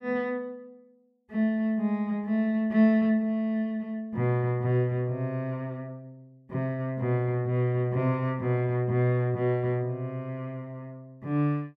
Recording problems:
none

